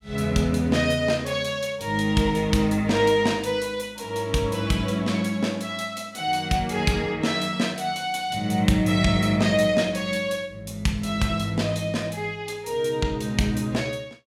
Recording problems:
none

